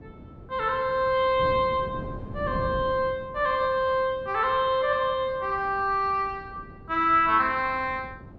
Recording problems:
wind noise; below 290 Hz, SNR 16 dB

